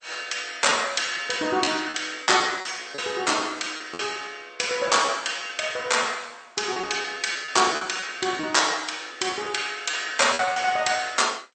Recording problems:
lossy codec; MP2, then MP3, log-spectral distance 6 dB, nothing above 8.5 kHz
lost packets; 8% of the sound replaced, filled with repeated pitch periods

